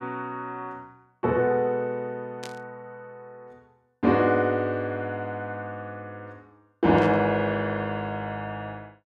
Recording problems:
burst of static; at 2.5 s and at 7 s; peak -8 dB vs average level

